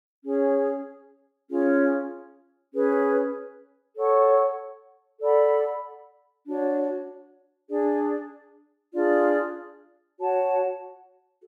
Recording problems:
none

